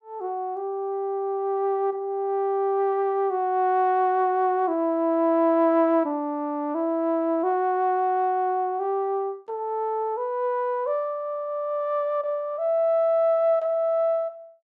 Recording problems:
none

